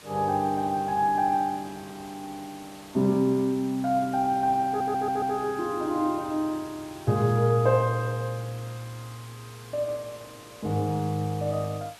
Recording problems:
background hiss; SNR 21 dB
audio stuttering; at 4.5 s

